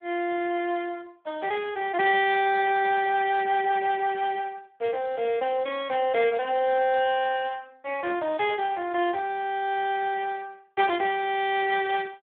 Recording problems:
phone line; 300 Hz to 3.4 kHz, Speex

